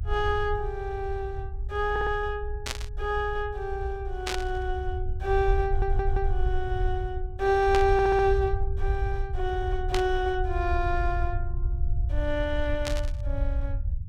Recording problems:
rumble; below 68 Hz, SNR 4 dB
audio stuttering; at 2 s, at 5.5 s and at 8 s
burst of static; 5 times, first at 2.5 s; peak +2 dB vs average level

